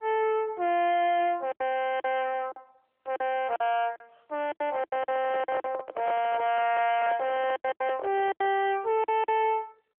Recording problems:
telephone audio; 300 Hz to 3.5 kHz, AMR-NB
distortion; soft clipping, signal-to-distortion ratio 7 dB
packet loss; 10% of the sound replaced, filled with silence
handling noise; from 4.5 to 8.5 s; peak -3 dB vs average level

